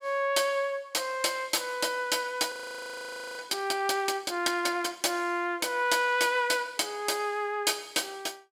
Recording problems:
audio freezing; at 2.5 s for 1 s

